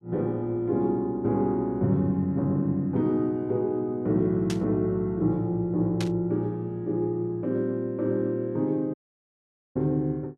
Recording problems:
burst of static; at 4.5 s and at 6 s; peak -4 dB vs average level
audio cutting out; at 9 s for 1 s

